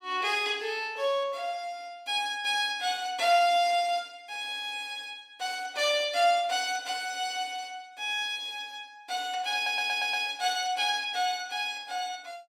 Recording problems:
stutter; at 9.5 s

